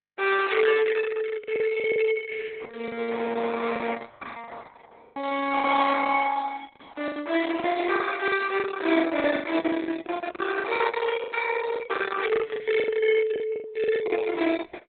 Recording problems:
lossy codec; Opus, log-spectral distance 5 dB, nothing above 3.9 kHz
packet loss; 12% of the sound replaced, filled with the last packet

